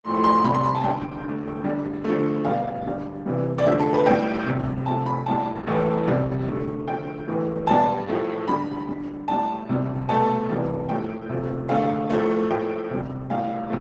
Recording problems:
codec artefacts; Opus, log-spectral distance 3 dB, nothing above 7.3 kHz

